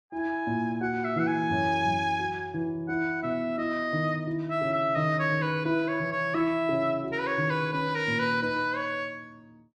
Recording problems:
none

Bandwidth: 13.5 kHz